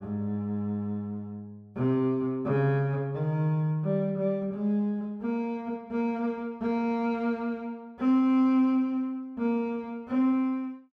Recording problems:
none

